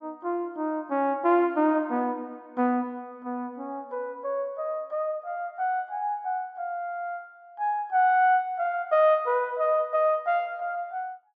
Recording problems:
none

